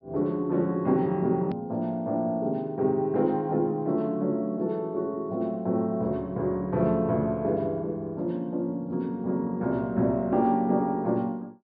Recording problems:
treble missing; nothing above 5.3 kHz
hard cut with a click; at 1.5 s

